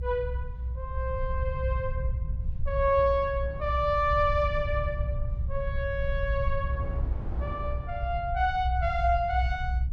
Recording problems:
low-frequency rumble; below 78 Hz, SNR 3 dB
wind noise; below 570 Hz, SNR 18 dB

